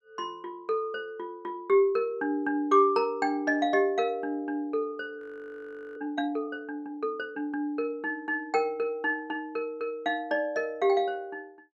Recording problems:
audio freezing; at 5 s for 1 s

